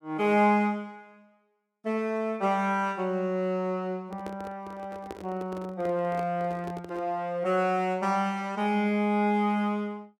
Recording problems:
handling noise; from 4 to 7 s; peak -7 dB vs average level

